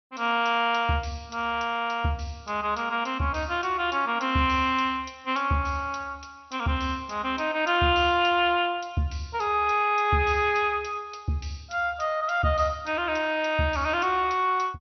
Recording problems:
lossy compression; MP2, log-spectral distance 4 dB, nothing above 6 kHz

